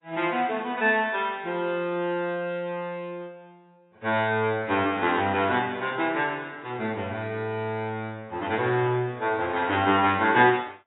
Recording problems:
lossy codec; AAC, log-spectral distance 3 dB, nothing above 3.7 kHz

